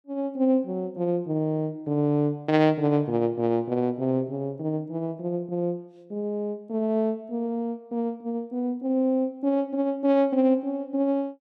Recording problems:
none

